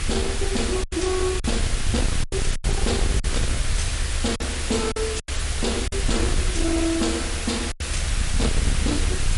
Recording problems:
lossy codec; MP3, log-spectral distance 9 dB, nothing above 10.7 kHz
distorted audio; soft clipping, signal-to-distortion ratio 6 dB
hum; 50 Hz, harmonics up to 1.8 kHz, SNR 23 dB
background hiss; slope 0 dB per octave, SNR 2 dB
rumble; below 76 Hz, SNR 1 dB
packet loss; 7% of the sound replaced, filled with silence

